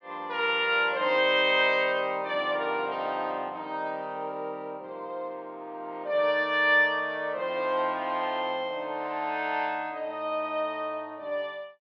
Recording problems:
none

